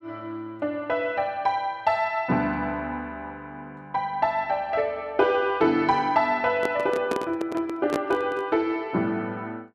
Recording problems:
handling noise; from 6.5 to 8.5 s; peak +2 dB vs average level

